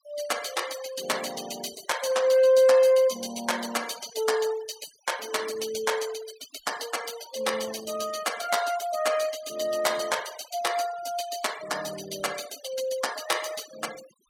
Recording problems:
denoising artefacts; signal-to-artefact ratio 15 dB

